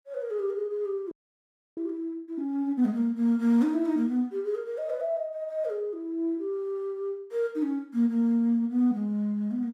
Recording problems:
frozen audio; at 1 s for 0.5 s

